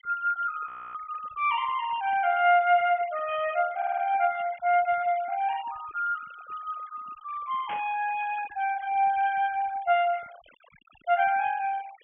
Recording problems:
treble missing; nothing above 3.3 kHz
noise reduction artefacts; signal-to-artefact ratio 21 dB
audio freezing; at 0.5 s
stutter; at 4 s
static burst; at 7.5 s; peak -8 dB vs average level

